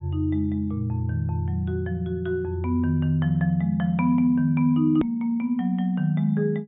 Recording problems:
treble missing; nothing above 4 kHz
hard cut with a click; at 5 s

